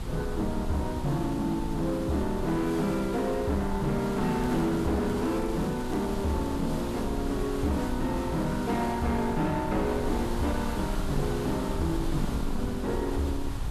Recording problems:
distorted audio; soft clipping, signal-to-distortion ratio 11 dB
hum; 60 Hz, harmonics up to 720 Hz, SNR 12 dB
background hiss; SNR 14 dB
low-frequency rumble; below 86 Hz, strongest tone 20 Hz, SNR 9 dB
crackling; from 4 to 6.5 s; loose cable, SNR 24 dB

